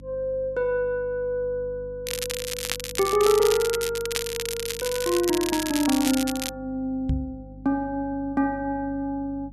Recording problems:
hum; 50 Hz, harmonics up to 300 Hz, SNR 18 dB
crackle; from 2 to 6.5 s; loose cable, SNR 4 dB
microphone bump; at 7 s; peak +3 dB vs average level

